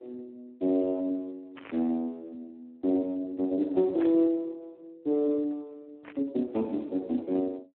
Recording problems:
telephone audio; 190 Hz to 2.8 kHz, Speex
burst of static; at 1.5 s, at 4 s and at 6 s; peak -9 dB vs average level

